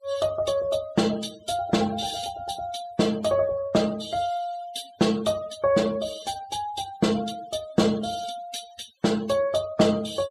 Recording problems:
noise reduction artefacts; signal-to-artefact ratio 19 dB

